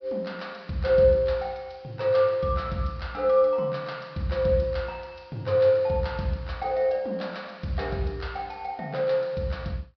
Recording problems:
treble cut off; nothing above 5.5 kHz

